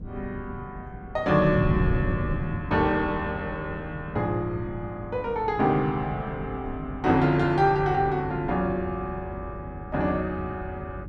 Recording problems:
electrical hum; 50 Hz, harmonics up to 450 Hz, SNR 18 dB
wind on the microphone; below 200 Hz, SNR 9 dB

